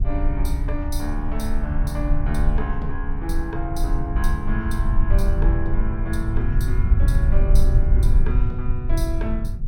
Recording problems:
rumble; below 58 Hz, strongest tone 20 Hz, SNR -5 dB

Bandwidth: 17 kHz